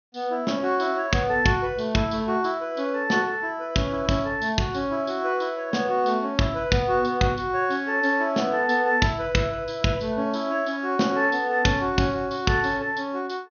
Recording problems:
treble missing; nothing above 6.5 kHz

